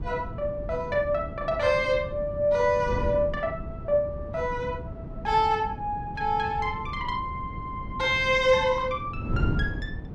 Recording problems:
wind on the microphone; below 210 Hz, SNR 9 dB

